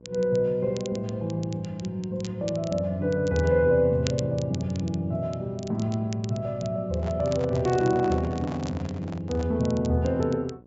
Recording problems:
treble missing; nothing above 8 kHz
hum; 60 Hz, harmonics up to 1.1 kHz, SNR 25 dB
crackle; vinyl, SNR 20 dB
microphone handling noise; from 7 to 9.5 s; peak -7 dB vs average level

